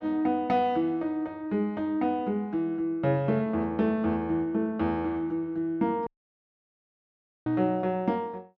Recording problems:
audio cutting out; at 6 s for 1.5 s

